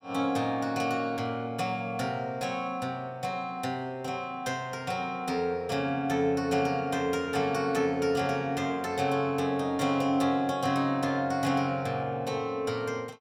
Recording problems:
none

